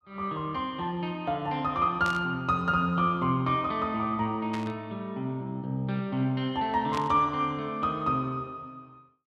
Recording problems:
burst of static; at 2 s, at 4.5 s and at 7 s; peak -5 dB vs average level

